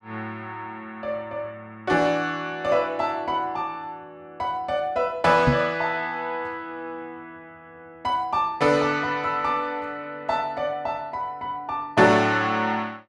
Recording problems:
microphone bump; at 5.5 s; peak +6 dB vs average level

